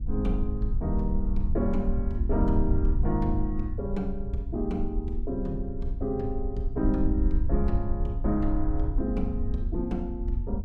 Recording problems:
rumble; below 64 Hz, SNR 0 dB

